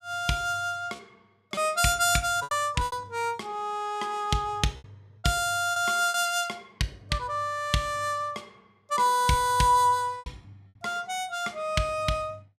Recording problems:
packet loss; 4% of the sound replaced, filled with repeated pitch periods

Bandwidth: 14.5 kHz